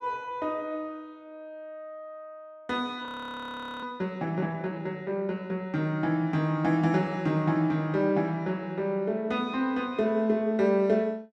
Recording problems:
frozen audio; at 3 s for 1 s

